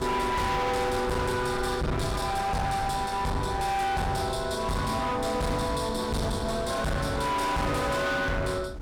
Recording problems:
distortion; hard clipping, uneven, signal-to-distortion ratio 6 dB
wind on the microphone; below 490 Hz, SNR 11 dB

